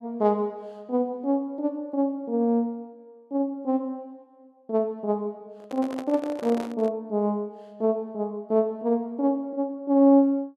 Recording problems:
handling noise; from 5.5 to 7 s; peak -7 dB vs average level

